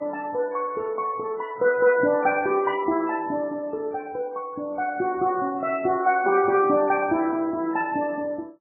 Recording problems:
lossy compression; Vorbis, then MP3, log-spectral distance 2 dB, nothing above 2.4 kHz

